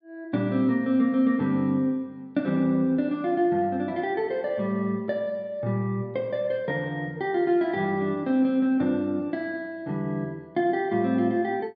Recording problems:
none

